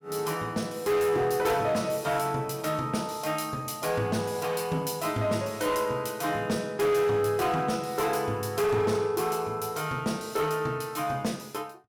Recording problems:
distorted audio; hard clipping, signal-to-distortion ratio 12 dB

